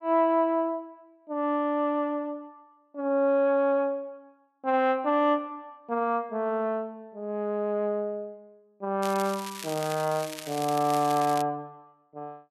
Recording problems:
crackle; from 9 to 11 s; loose cable, SNR 12 dB

